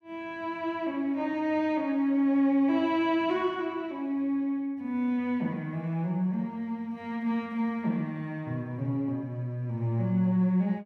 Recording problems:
none

